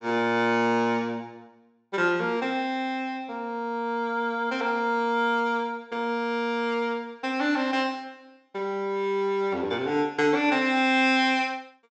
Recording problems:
low-pass filter; nothing above 8 kHz

